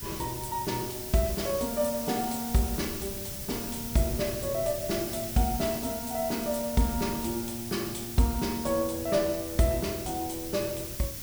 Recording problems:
background hiss; slope +3 dB per octave, SNR 6 dB
wind on the microphone; below 180 Hz, SNR 16 dB

